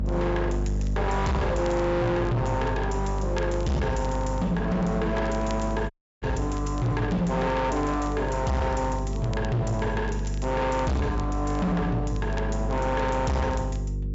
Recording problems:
low-pass filter; nothing above 8 kHz
distortion; hard clipping, signal-to-distortion ratio 6 dB
mains hum; 50 Hz, harmonics up to 500 Hz, SNR 4 dB
crackling; vinyl, SNR 25 dB
dropout; at 6 s

